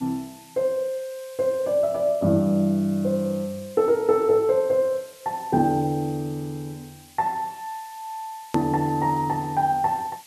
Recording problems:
background hiss; slope +2 dB per octave, SNR 23 dB
click at an edit; at 8.5 s

